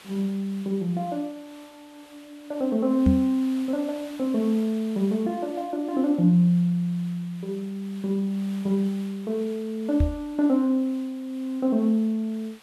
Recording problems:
background hiss; SNR 24 dB
microphone thump; at 3 s and at 10 s; peak +7 dB vs average level

